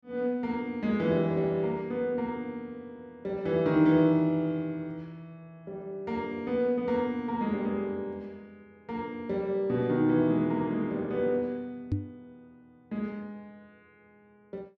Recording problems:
knock on the microphone; at 12 s; peak +3 dB vs average level

